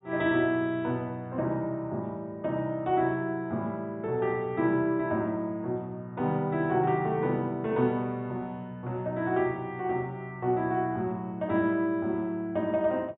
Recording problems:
treble cut off; nothing above 4 kHz

